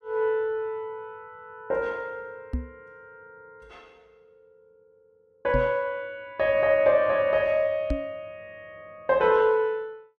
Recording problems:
microphone thump; at 2.5 s, at 5.5 s and at 8 s; peak 0 dB vs average level

